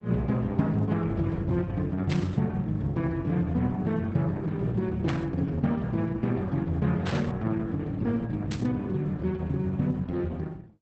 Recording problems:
codec artefacts; Opus, log-spectral distance 2 dB
static burst; 4 times, first at 2 s; peak -4 dB vs average level

